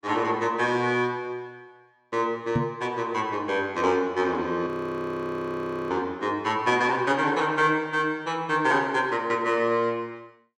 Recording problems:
microphone thump; at 2.5 s; peak +3 dB vs average level
frozen audio; at 4.5 s for 1 s

